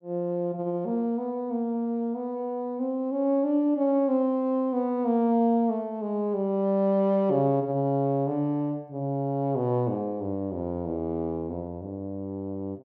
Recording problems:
none

